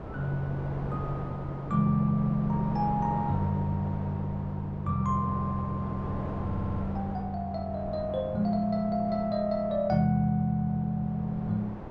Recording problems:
wind on the microphone; below 660 Hz, SNR 11 dB
stutter; at 6.5 s

